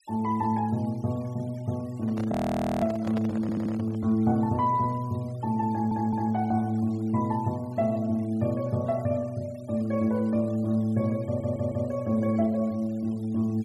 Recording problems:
denoising artefacts; signal-to-artefact ratio 26 dB
microphone handling noise; from 2 to 4 s; peak -5 dB vs average level
frozen audio; at 2.5 s for 0.5 s
stutter; at 3.5 s, at 5.5 s and at 11 s

